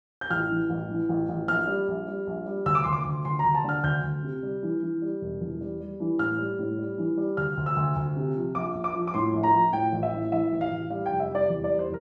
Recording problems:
none

